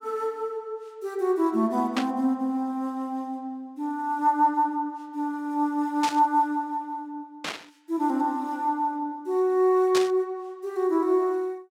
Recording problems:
burst of static; 4 times, first at 2 s; peak +1 dB vs average level

